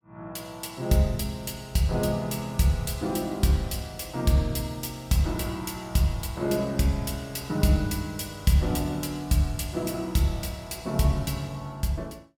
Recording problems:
none

